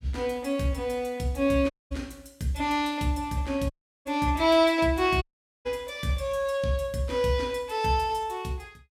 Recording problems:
dropout; at 1.5 s, at 3.5 s and at 5 s

